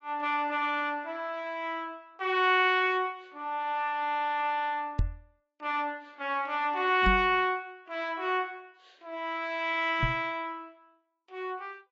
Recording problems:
codec artefacts; AAC, log-spectral distance 2 dB, nothing above 7.3 kHz
knock on the microphone; at 5 s, at 7 s and at 10 s; peak +4 dB vs average level

